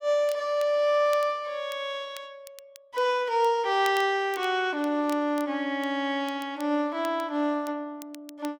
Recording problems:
crackling; vinyl, SNR 23 dB

